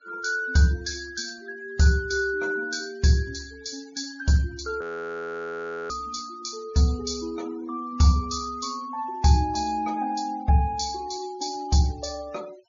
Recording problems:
treble cut off; nothing above 7.1 kHz
noise reduction artefacts; signal-to-artefact ratio 23 dB
audio freezing; at 5 s for 1 s

